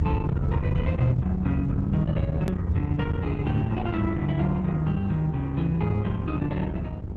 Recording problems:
lossy compression; Opus, log-spectral distance 2 dB, nothing above 13.1 kHz
distortion; soft clipping, signal-to-distortion ratio 12 dB
hum; 50 Hz, harmonics up to 1.4 kHz, SNR 17 dB
low-frequency rumble; below 160 Hz, SNR 4 dB
hard cut with a click; at 2.5 s

